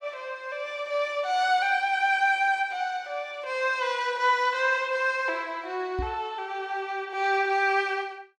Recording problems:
microphone bump; at 6 s; peak -4 dB vs average level

